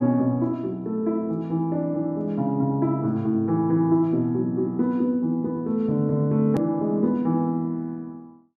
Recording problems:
edit click; at 6.5 s

